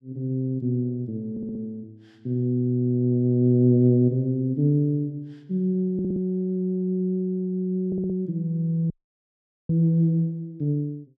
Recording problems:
audio stuttering; at 1.5 s, at 6 s and at 8 s
audio cutting out; at 9 s for 1 s

